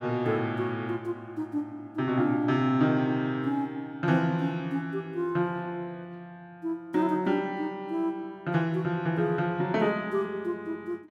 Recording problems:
none

